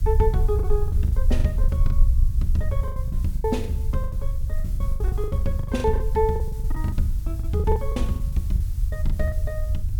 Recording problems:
background hiss; slope 0 dB per octave, SNR 21 dB
rumble; below 66 Hz, strongest tone 24 Hz, SNR -2 dB
lost packets; 17% of the sound replaced, filled with the last packet

